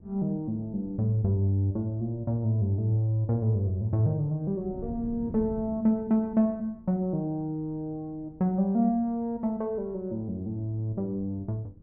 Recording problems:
wind noise; below 210 Hz, SNR 20 dB

